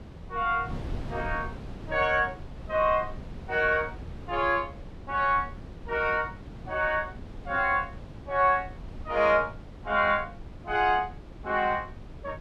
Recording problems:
wind noise; below 240 Hz, SNR 15 dB

